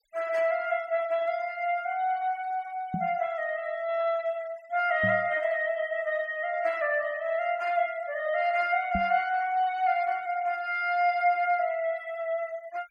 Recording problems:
noise reduction artefacts; signal-to-artefact ratio 25 dB
knock on the microphone; at 3 s, at 5 s and at 9 s; peak -1 dB vs average level

